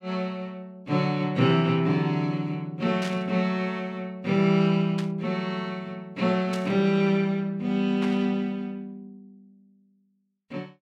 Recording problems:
burst of static; 4 times, first at 3 s; peak -7 dB vs average level

